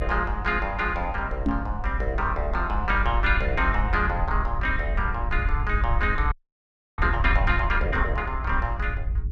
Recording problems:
electrical hum; 60 Hz, harmonics up to 420 Hz, SNR 20 dB
rumble; below 66 Hz, SNR 2 dB
knock on the microphone; at 1.5 s; peak +5 dB vs average level
audio freezing; at 6.5 s for 0.5 s

